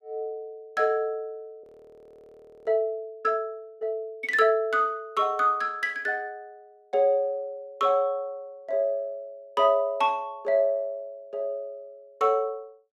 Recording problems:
frozen audio; at 1.5 s for 1 s

